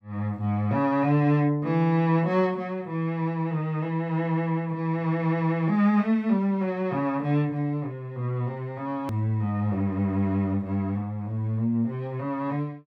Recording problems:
edit click; at 9 s

